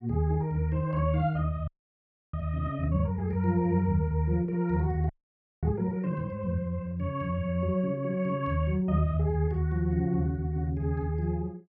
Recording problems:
frozen audio; at 1.5 s for 0.5 s and at 5 s for 0.5 s

